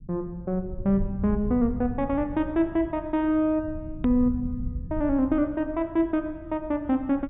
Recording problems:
treble missing; nothing above 4 kHz
rumble; below 110 Hz, SNR 12 dB
hard cut with a click; at 4 s

